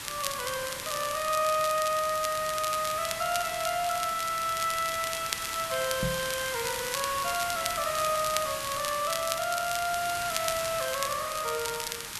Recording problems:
hiss; SNR 5 dB
crackling; vinyl, SNR 7 dB
knock on the microphone; at 6 s; peak +1 dB vs average level

